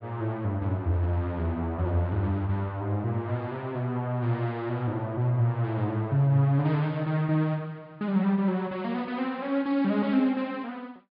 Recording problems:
treble missing; nothing above 5.1 kHz

